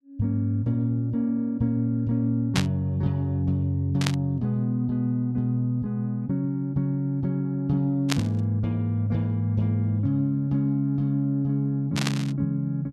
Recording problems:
burst of static; 4 times, first at 2.5 s; peak +3 dB vs average level

